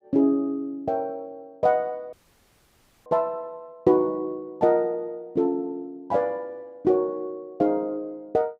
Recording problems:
dropout; at 2 s for 1 s

